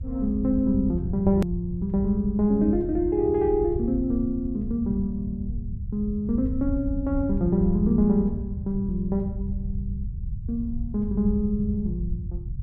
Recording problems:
low-frequency rumble; below 100 Hz, SNR 7 dB
hard cut with a click; at 1.5 s

